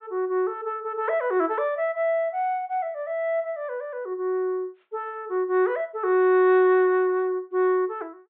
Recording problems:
treble missing; nothing above 4 kHz

